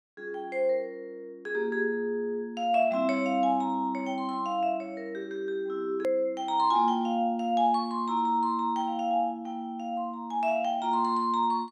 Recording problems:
hard cut with a click; at 6 s

